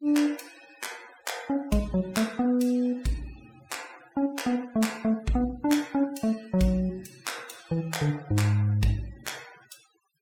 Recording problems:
denoising artefacts; signal-to-artefact ratio 21 dB

